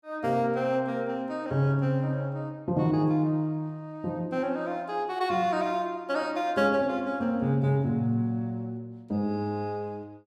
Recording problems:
none

